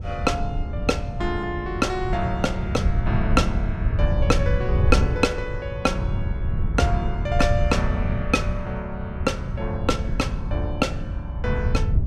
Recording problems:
wind noise; below 110 Hz, SNR 0 dB

